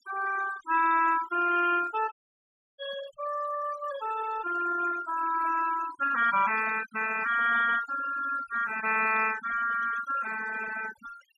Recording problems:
noise reduction artefacts; signal-to-artefact ratio 13 dB
dropout; at 2 s for 0.5 s

